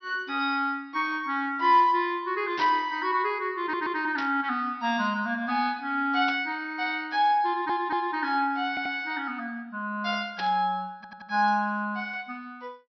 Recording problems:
treble cut off; nothing above 5.9 kHz
static burst; 4 times, first at 2.5 s; peak -5 dB vs average level
stutter; 4 times, first at 3.5 s

